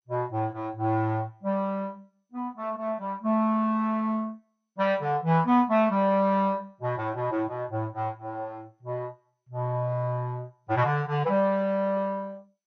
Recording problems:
codec artefacts; MP2, log-spectral distance 2 dB, nothing above 6.2 kHz

